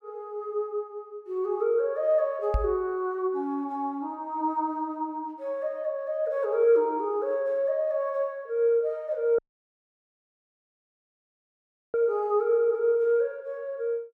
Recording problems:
knock on the microphone; at 2.5 s; peak +3 dB vs average level
dropout; at 9.5 s for 2.5 s

